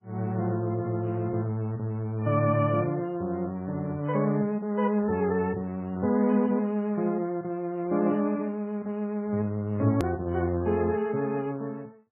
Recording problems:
lossy compression; MP3, log-spectral distance 2 dB, nothing above 13.1 kHz
edit click; at 10 s

